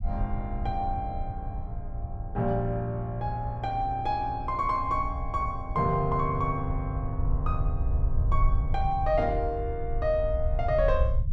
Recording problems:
low-frequency rumble; below 76 Hz, SNR 4 dB

